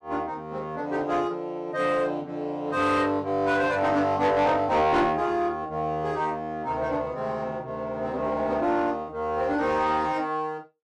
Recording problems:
distortion; soft clipping, signal-to-distortion ratio 11 dB

